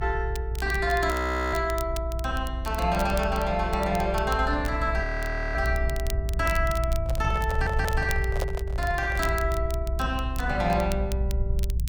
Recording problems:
low-frequency rumble; below 64 Hz, strongest tone 58 Hz, SNR 3 dB
crackling; vinyl, SNR 15 dB
frozen audio; at 1 s and at 5 s for 0.5 s
microphone handling noise; from 7 to 9.5 s; peak 0 dB vs average level
audio stuttering; at 7.5 s

